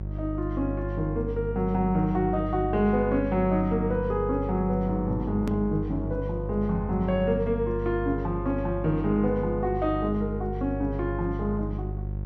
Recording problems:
mains hum; 50 Hz, harmonics up to 550 Hz, SNR 6 dB
hard cut with a click; at 5.5 s

